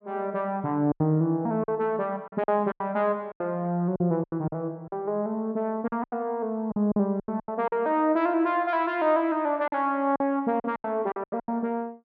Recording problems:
packet loss; 11% of the sound replaced, filled with silence

